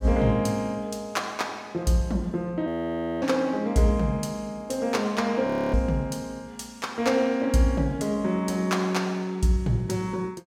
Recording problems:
audio freezing; at 2.5 s for 0.5 s and at 5.5 s

